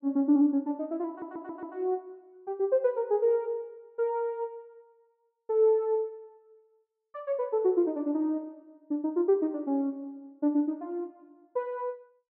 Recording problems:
stutter; at 1 s

